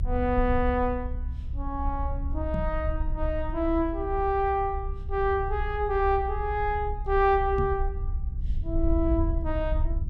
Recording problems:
low-frequency rumble; below 66 Hz, strongest tone 30 Hz, SNR 5 dB
microphone thump; at 2.5 s and at 7.5 s; peak +1 dB vs average level

